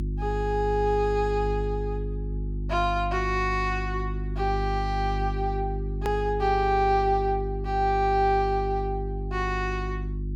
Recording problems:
hum; 50 Hz, harmonics up to 350 Hz, SNR 5 dB
click at an edit; at 6 s

